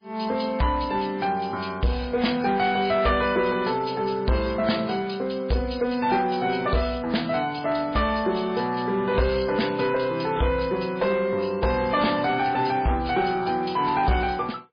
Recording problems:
lossy compression; MP3, log-spectral distance 6 dB
distorted audio; soft clipping, signal-to-distortion ratio 11 dB

